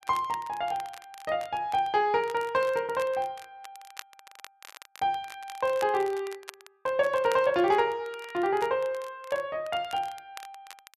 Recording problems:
crackling; vinyl, SNR 20 dB

